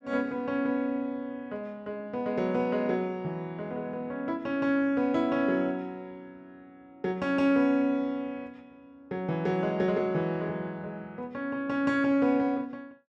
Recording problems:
none

